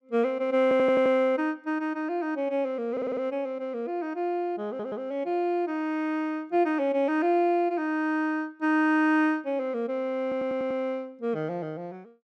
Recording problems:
stutter; 4 times, first at 0.5 s

